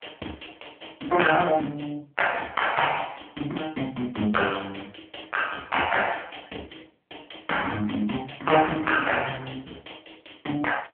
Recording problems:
phone line; 220 Hz to 3.2 kHz, AMR-NB

